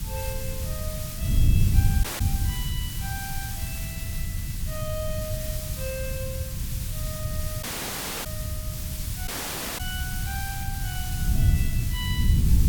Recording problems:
background hiss; slope +2 dB per octave, SNR -3 dB
wind noise; below 110 Hz, SNR -10 dB
dropout; at 2 s, at 7.5 s for 0.5 s and at 9.5 s for 0.5 s

